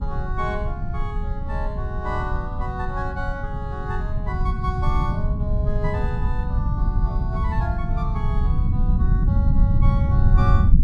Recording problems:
rumble; below 110 Hz, SNR -8 dB

